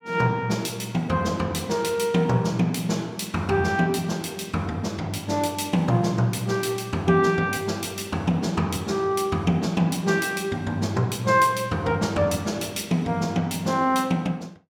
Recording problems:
none

